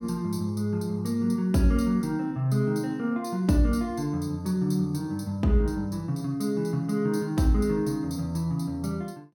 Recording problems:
none

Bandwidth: 17 kHz